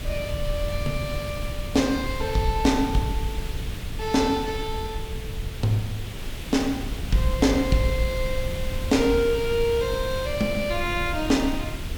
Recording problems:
background hiss; SNR 11 dB
rumble; below 86 Hz, SNR 9 dB

